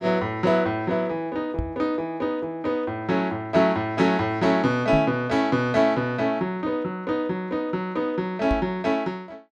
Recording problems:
knock on the microphone; at 1.5 s, at 5 s and at 8.5 s; peak 0 dB vs average level

